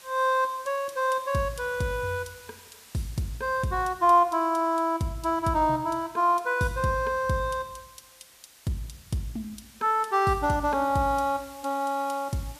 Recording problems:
background hiss; slope +1 dB per octave, SNR 23 dB

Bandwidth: 14.5 kHz